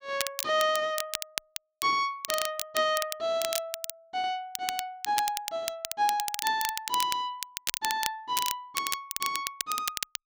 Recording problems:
crackle; vinyl, SNR 4 dB

